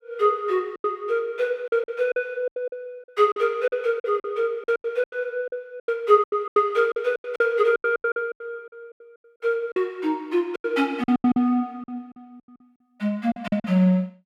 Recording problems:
packet loss; 15% of the sound replaced, filled with silence

